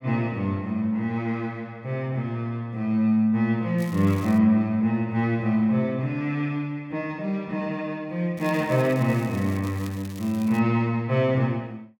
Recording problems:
crackle; at 4 s and from 8.5 to 11 s; loose cable, SNR 21 dB

